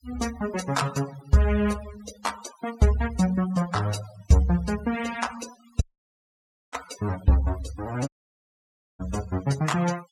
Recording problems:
denoising artefacts; signal-to-artefact ratio 15 dB
dropout; at 6 s for 1 s and at 8 s for 1 s

